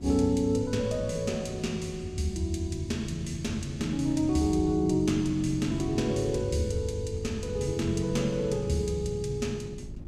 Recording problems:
hum; 50 Hz, harmonics up to 350 Hz, SNR 14 dB
wind on the microphone; below 160 Hz, SNR 17 dB

